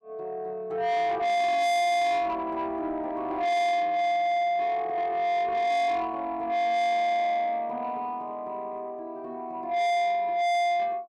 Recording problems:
distorted audio; soft clipping, signal-to-distortion ratio 6 dB

